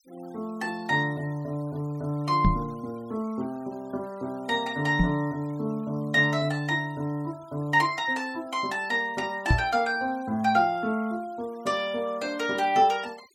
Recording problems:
denoising artefacts; signal-to-artefact ratio 25 dB
microphone thump; at 2.5 s, at 5 s and at 9.5 s; peak +8 dB vs average level

